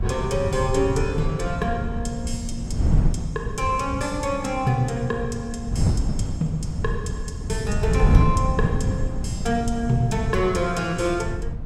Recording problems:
wind on the microphone; below 140 Hz, SNR 1 dB

